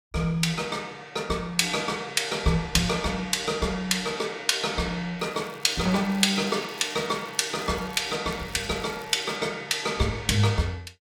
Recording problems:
crackling; from 5 to 8 s and from 8.5 to 9.5 s; loose cable, SNR 24 dB

